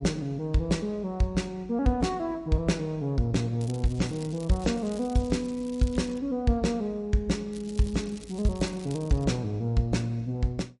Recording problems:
lossy codec; MP3, log-spectral distance 2 dB, nothing above 10.7 kHz
crackle; from 3.5 to 6 s and from 7.5 to 9 s; loose cable, SNR 20 dB

